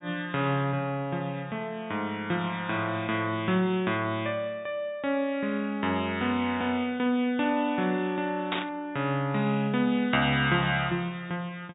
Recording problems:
treble cut off; nothing above 4 kHz
burst of static; at 8.5 s; peak +2 dB vs average level

